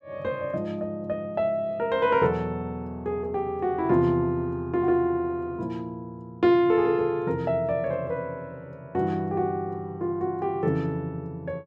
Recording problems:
none

